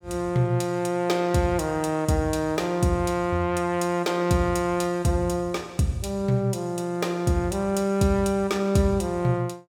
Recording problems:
none

